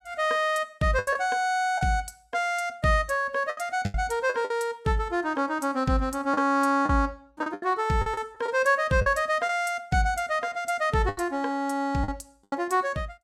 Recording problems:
lost packets; 7% of the sound replaced, filled with the last packet

